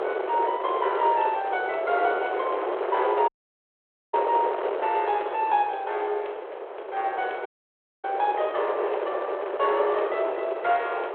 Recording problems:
telephone audio; 340 Hz to 3.4 kHz, G.726
wind on the microphone; below 840 Hz, SNR 4 dB
audio cutting out; at 3.5 s for 1 s and at 7.5 s for 0.5 s

